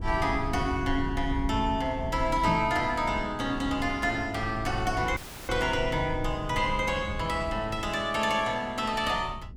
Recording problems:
low-frequency rumble; below 110 Hz, SNR 9 dB
microphone thump; at 2.5 s; peak +1 dB vs average level
dropout; at 5 s

